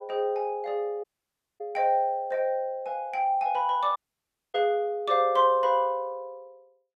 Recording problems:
audio cutting out; at 1 s for 0.5 s and at 4 s for 0.5 s

